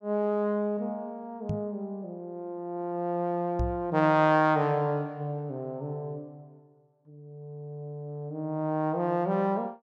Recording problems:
microphone thump; at 1.5 s and at 3.5 s; peak +2 dB vs average level

